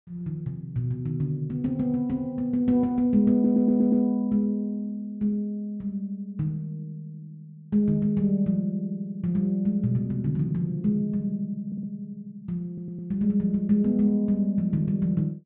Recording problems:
treble cut off; nothing above 4 kHz
stutter; at 3.5 s, at 12 s and at 13 s

